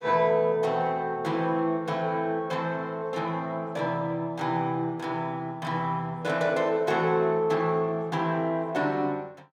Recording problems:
none

